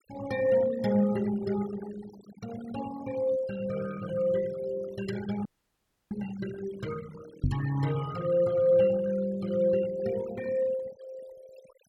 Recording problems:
denoising artefacts; signal-to-artefact ratio 17 dB
audio freezing; at 5.5 s for 0.5 s
microphone thump; at 7.5 s; peak +5 dB vs average level

